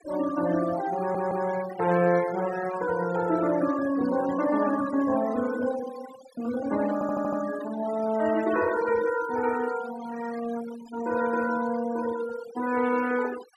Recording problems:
denoising artefacts; signal-to-artefact ratio 14 dB
stutter; at 1 s and at 7 s

